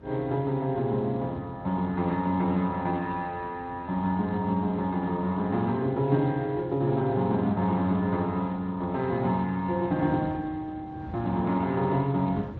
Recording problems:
lossy compression; MP3, then Speex, log-spectral distance 2 dB, nothing above 4 kHz
wind noise; below 290 Hz, SNR 18 dB

